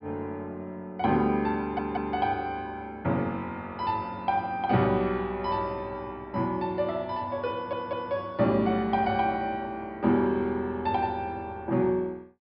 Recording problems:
low-pass filter; nothing above 5.5 kHz
stutter; at 1.5 s and at 7.5 s

